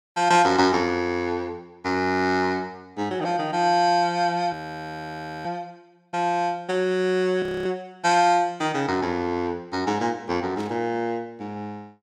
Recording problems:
audio freezing; at 4.5 s for 1 s and at 7.5 s
burst of static; at 11 s; peak -15 dB vs average level

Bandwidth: 16 kHz